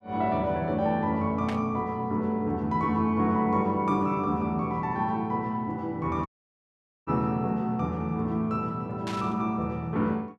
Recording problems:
static burst; at 1.5 s and at 9 s; peak -6 dB vs average level
dropout; at 6.5 s for 1 s

